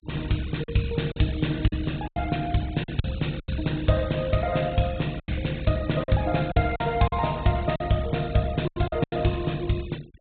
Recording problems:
treble missing; nothing above 4 kHz
denoising artefacts; signal-to-artefact ratio 21 dB
packet loss; 8% of the sound replaced, filled with silence

